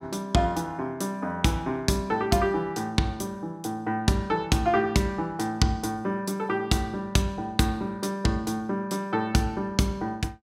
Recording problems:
none

